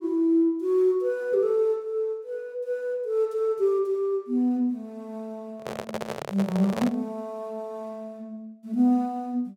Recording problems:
handling noise; from 5.5 to 7 s; peak -1 dB vs average level

